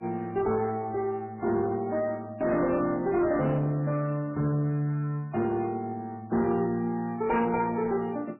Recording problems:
lossy codec; MP3, log-spectral distance 2 dB, nothing above 2.4 kHz
distorted audio; soft clipping, signal-to-distortion ratio 12 dB

